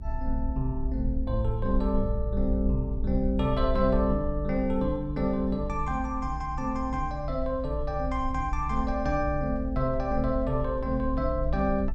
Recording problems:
rumble; below 58 Hz, SNR 5 dB

